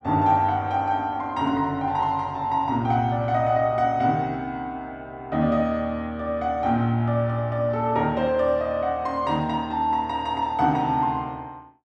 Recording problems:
none

